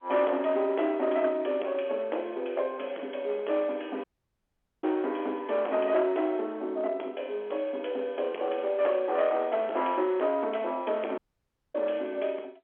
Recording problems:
telephone audio; 280 Hz to 3.4 kHz, G.711
distortion; hard clipping, uneven, signal-to-distortion ratio 10 dB
audio cutting out; at 4 s for 1 s and at 11 s for 0.5 s

